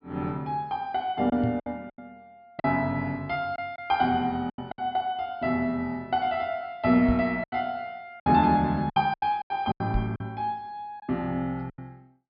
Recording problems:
treble missing; nothing above 5.2 kHz
lost packets; 8% of the sound replaced, filled with silence
microphone bump; at 1.5 s, at 7 s and at 10 s; peak +1 dB vs average level

